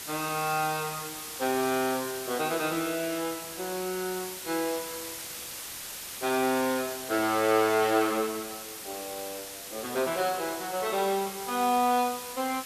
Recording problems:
hiss; slope +1 dB per octave, SNR 8 dB

